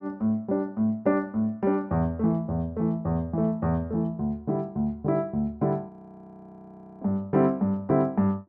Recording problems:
frozen audio; at 6 s for 1 s

